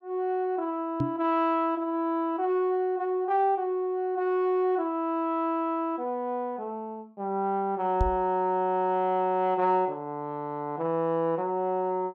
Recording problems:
microphone bump; at 1 s and at 8 s; peak +4 dB vs average level

